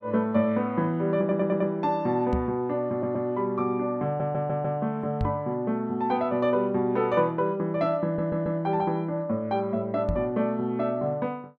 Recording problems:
audio stuttering; 4 times, first at 1 s
microphone bump; at 2.5 s, at 5 s and at 10 s; peak +2 dB vs average level

